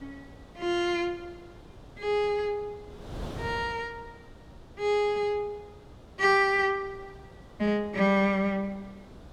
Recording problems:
wind noise; below 550 Hz, SNR 19 dB

